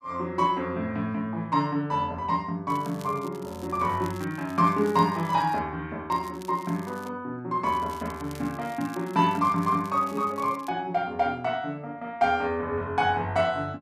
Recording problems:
crackle; from 2.5 to 5.5 s, at 6 s and from 7.5 to 11 s; loose cable, SNR 23 dB

